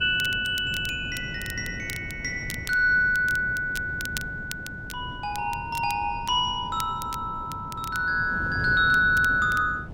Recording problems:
wind noise; below 260 Hz, SNR 14 dB
crackling; vinyl, SNR 17 dB

